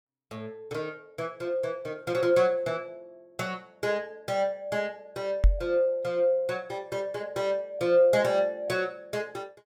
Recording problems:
microphone bump; at 5.5 s; peak +10 dB vs average level

